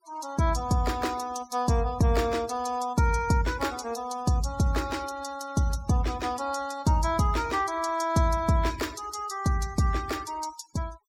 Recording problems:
denoising artefacts; signal-to-artefact ratio 19 dB

